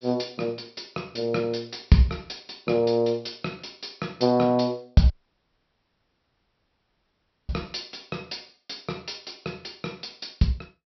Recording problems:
treble missing; nothing above 5.5 kHz
dropout; at 5 s for 2.5 s

